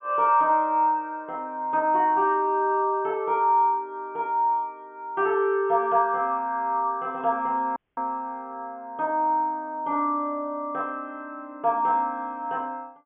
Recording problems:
treble cut off; nothing above 3.4 kHz
dropout; at 8 s

